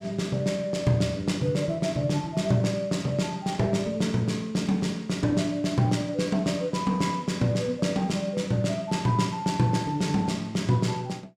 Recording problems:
none

